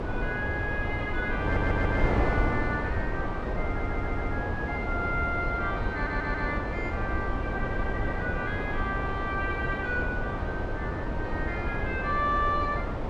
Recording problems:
wind noise; below 540 Hz, SNR -1 dB
stutter; at 1.5 s, at 3.5 s and at 6 s

